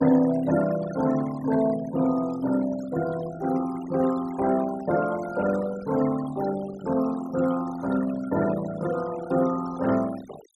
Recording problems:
denoising artefacts; signal-to-artefact ratio 15 dB

